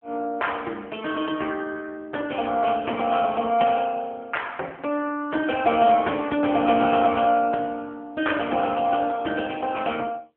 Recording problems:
phone line; 260 Hz to 3 kHz, AMR-NB

